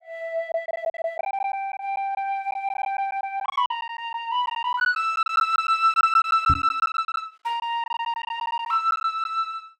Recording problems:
packet loss; 13% of the sound replaced, filled with silence
microphone bump; at 6.5 s; peak +2 dB vs average level

